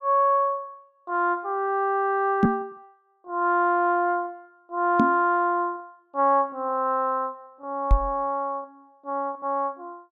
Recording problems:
lost packets; 5% of the sound replaced, filled with repeated pitch periods
microphone thump; at 2.5 s, at 5 s and at 8 s; peak +8 dB vs average level

